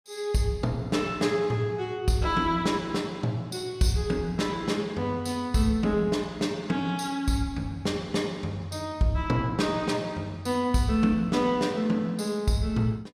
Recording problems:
none

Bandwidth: 15.5 kHz